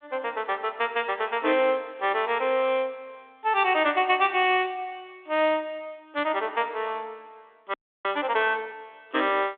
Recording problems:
telephone audio; 260 Hz to 3.7 kHz, G.726
audio freezing; at 7.5 s

